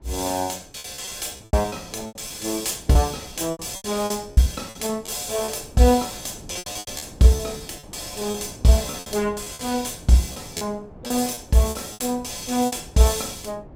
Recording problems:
wind on the microphone; below 430 Hz, SNR 21 dB
packet loss; 13% of the sound replaced, filled with repeated pitch periods

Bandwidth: 16 kHz